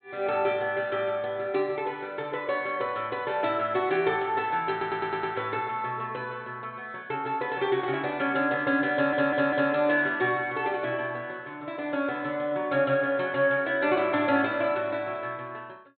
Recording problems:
treble cut off; nothing above 4 kHz
audio stuttering; at 4.5 s and at 9 s

